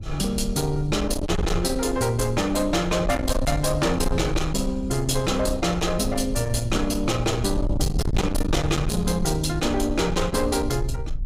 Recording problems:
distortion; soft clipping, signal-to-distortion ratio 9 dB
wind on the microphone; below 110 Hz, SNR 6 dB

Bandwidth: 15.5 kHz